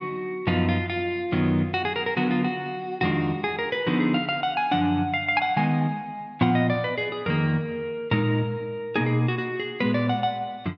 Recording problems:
none

